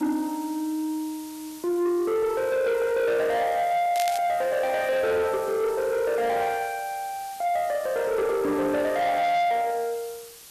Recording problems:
distorted audio; soft clipping, signal-to-distortion ratio 10 dB
background hiss; slope +1 dB per octave, SNR 19 dB
crackling; at 4 s; loose cable, SNR 12 dB

